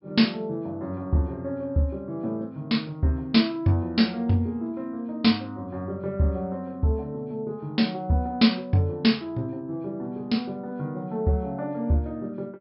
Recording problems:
low-pass filter; nothing above 5.3 kHz

